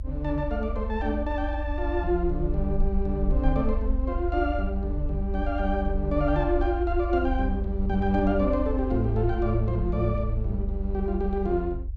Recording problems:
rumble; below 56 Hz, SNR 3 dB

